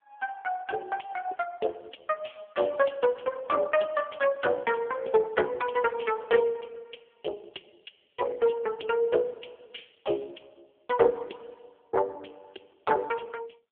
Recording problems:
telephone audio; 320 Hz to 2.9 kHz, AMR-NB

